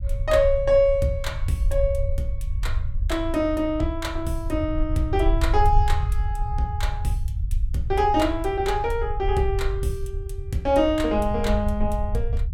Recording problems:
low-frequency rumble; below 74 Hz, SNR 4 dB

